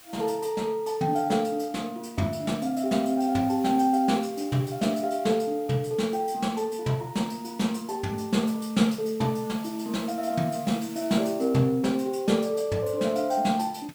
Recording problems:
background hiss; slope 0 dB per octave, SNR 22 dB

